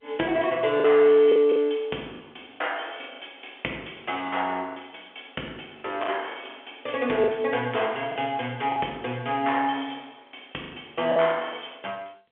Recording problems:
phone line; 220 Hz to 3.4 kHz, G.711
lost packets; 7% of the sound replaced, filled with the last packet

